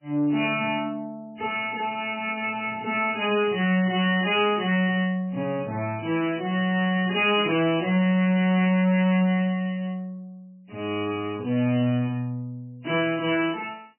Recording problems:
codec artefacts; MP3, log-spectral distance 4 dB, nothing above 2.6 kHz
distorted audio; soft clipping, signal-to-distortion ratio 11 dB

